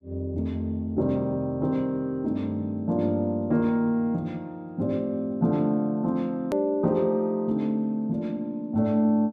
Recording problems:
hard cut with a click; at 6.5 s

